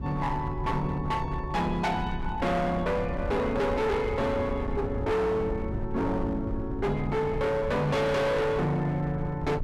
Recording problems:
distorted audio; hard clipping, signal-to-distortion ratio 7 dB
rumble; below 160 Hz, SNR 8 dB

